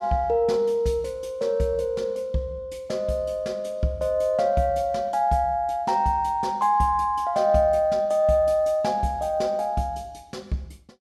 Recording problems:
none

